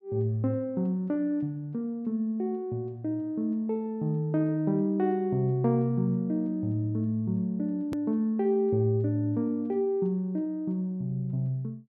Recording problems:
click at an edit; at 8 s

